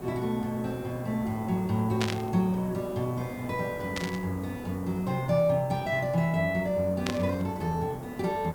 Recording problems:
background hiss; SNR 13 dB
static burst; at 2 s, at 4 s and at 7 s; peak +2 dB vs average level

